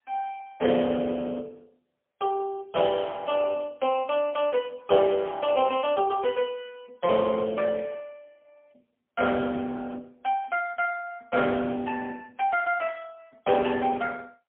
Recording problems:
telephone audio; 260 Hz to 3.5 kHz, AMR-NB, then MP3

